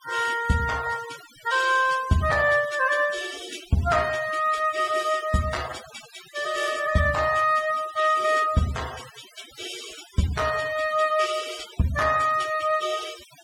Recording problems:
denoising artefacts; signal-to-artefact ratio 16 dB

